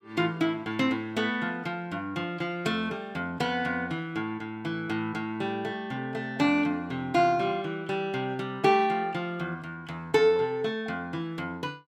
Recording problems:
none

